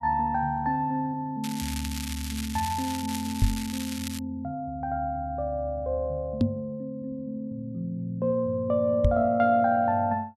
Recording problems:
crackle; from 1.5 to 4 s; loose cable, SNR 9 dB
microphone thump; at 3.5 s, at 6.5 s and at 9 s; peak +9 dB vs average level

